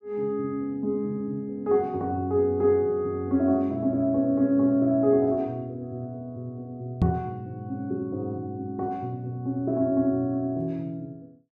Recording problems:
microphone bump; at 7 s; peak +6 dB vs average level

